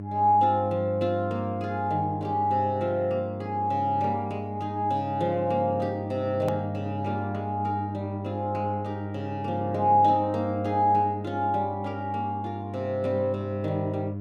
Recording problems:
electrical hum; 50 Hz, harmonics up to 700 Hz, SNR 8 dB
hard cut with a click; at 6.5 s

